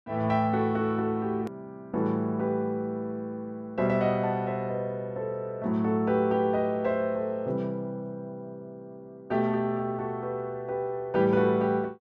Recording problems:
hard cut with a click; at 1.5 s

